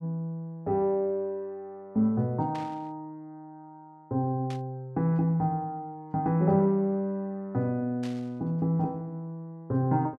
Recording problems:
burst of static; at 2.5 s, at 4.5 s and at 8 s; peak -11 dB vs average level

